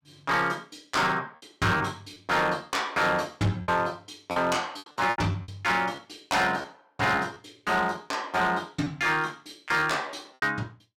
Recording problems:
distorted audio; hard clipping, uneven, signal-to-distortion ratio 10 dB
lost packets; 7% of the sound replaced, filled with repeated pitch periods

